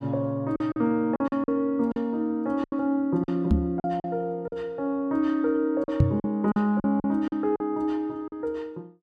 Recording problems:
lost packets; 9% of the sound replaced, filled with silence
microphone bump; at 3.5 s and at 6 s; peak +9 dB vs average level

